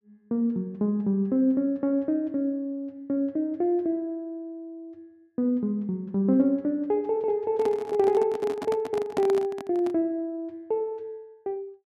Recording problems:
microphone handling noise; from 7.5 to 10 s; peak -2 dB vs average level

